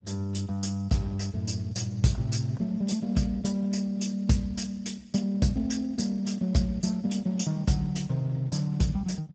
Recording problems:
lossy compression; Speex, log-spectral distance 4 dB, nothing above 7.6 kHz

